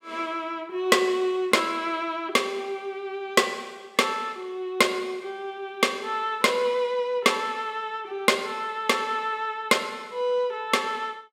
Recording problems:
none

